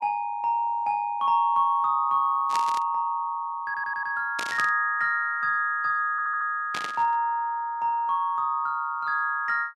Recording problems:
static burst; at 2.5 s, at 4.5 s and at 6.5 s; peak -3 dB vs average level
audio stuttering; at 3.5 s and at 6 s

